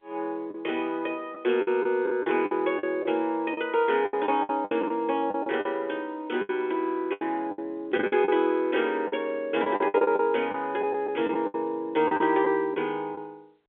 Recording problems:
telephone audio; 280 Hz to 3.4 kHz, G.711
packet loss; 11% of the sound replaced, filled with the last packet

